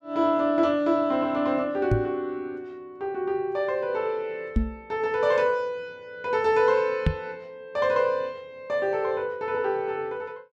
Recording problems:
microphone bump; at 2 s, at 4.5 s and at 7 s; peak +7 dB vs average level

